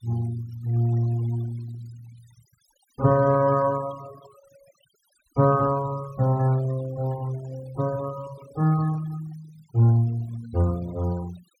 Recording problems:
denoising artefacts; signal-to-artefact ratio 22 dB

